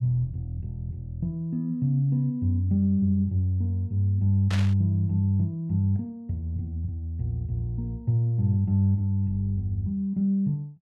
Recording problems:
static burst; at 4.5 s; peak -4 dB vs average level

